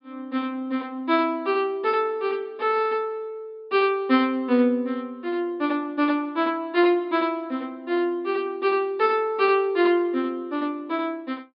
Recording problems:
treble missing; nothing above 5.2 kHz

